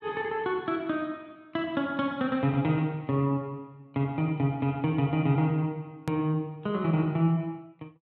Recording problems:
hard cut with a click; at 6 s

